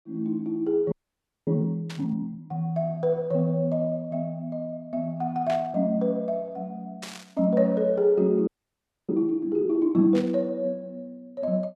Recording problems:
audio freezing; at 1 s for 0.5 s and at 8.5 s for 0.5 s
burst of static; 4 times, first at 2 s; peak -7 dB vs average level

